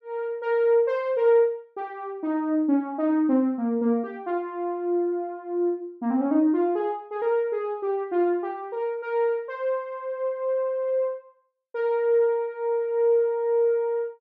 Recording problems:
none

